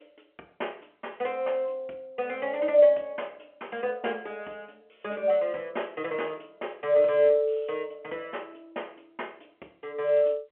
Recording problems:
phone line; 280 Hz to 3.3 kHz, G.711

